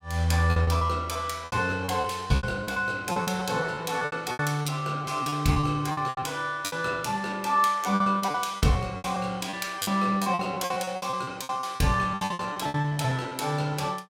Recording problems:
packet loss; 18% of the sound replaced, filled with repeated pitch periods

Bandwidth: 16.5 kHz